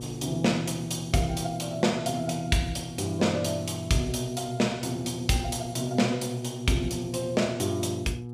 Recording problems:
hum; 60 Hz, harmonics up to 840 Hz, SNR 11 dB

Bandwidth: 15 kHz